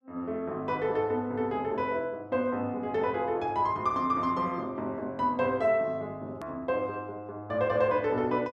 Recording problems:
click at an edit; at 6.5 s

